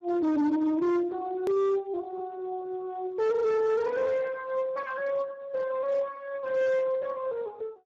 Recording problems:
lossy compression; Speex, log-spectral distance 2 dB, nothing above 13.1 kHz
distortion; hard clipping, signal-to-distortion ratio 11 dB
hard cut with a click; at 1.5 s

